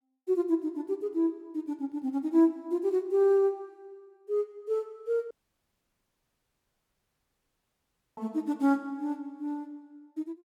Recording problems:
dropout; at 5.5 s for 3 s

